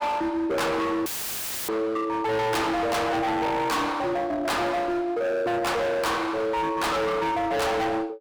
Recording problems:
distorted audio; hard clipping, signal-to-distortion ratio 6 dB
audio cutting out; at 1 s for 0.5 s; filled with static

